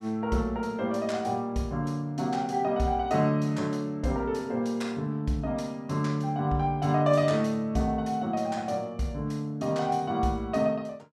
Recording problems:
none

